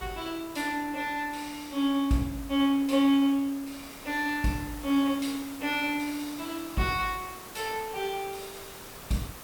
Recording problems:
hiss; slope -3 dB per octave, SNR 15 dB
wind on the microphone; below 1.2 kHz, SNR 24 dB

